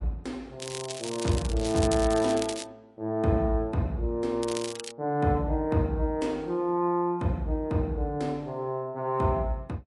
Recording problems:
codec artefacts; MP3, log-spectral distance 3 dB, nothing above 11 kHz
crackling; from 0.5 to 2.5 s and at 4.5 s; loose cable, SNR 10 dB

